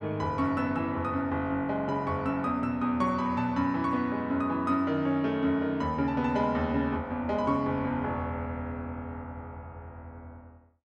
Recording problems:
none

